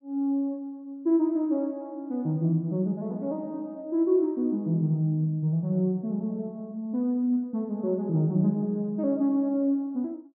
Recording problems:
none

